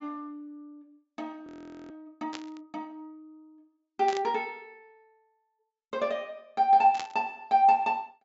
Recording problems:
treble missing; nothing above 8 kHz
audio freezing; at 1.5 s
static burst; at 2.5 s, at 4 s and at 7 s; peak -7 dB vs average level

